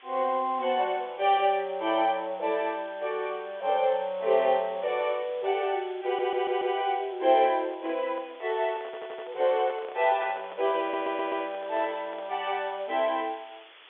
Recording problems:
telephone audio; 280 Hz to 3.5 kHz, G.711
background hiss; SNR 23 dB
stutter; at 6 s, at 9 s and at 11 s
handling noise; from 7.5 to 12 s; peak -10 dB vs average level

